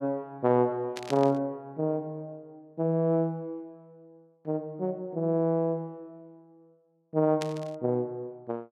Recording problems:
burst of static; at 1 s and at 7.5 s; peak -4 dB vs average level

